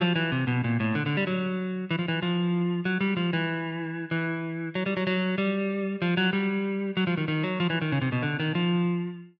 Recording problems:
none

